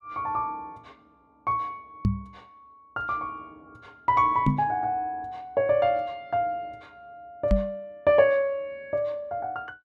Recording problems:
knock on the microphone; at 2 s, at 4.5 s and at 7.5 s; peak +7 dB vs average level

